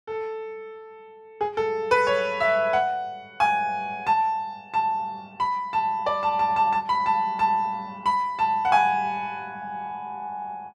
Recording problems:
none

